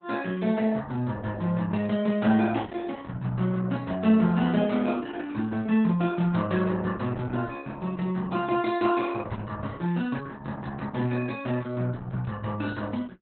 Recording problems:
lossy compression; Opus, log-spectral distance 4 dB, nothing above 4 kHz

